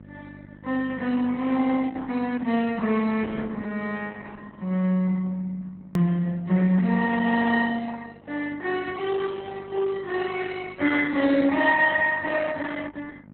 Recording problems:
lossy codec; Opus, log-spectral distance 3 dB, nothing above 19.5 kHz
hum; 50 Hz, harmonics up to 950 Hz, SNR 24 dB
edit click; at 6 s

